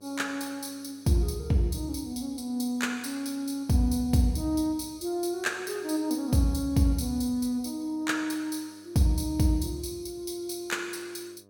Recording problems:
hum; 50 Hz, harmonics up to 1.3 kHz, SNR 29 dB

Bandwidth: 17 kHz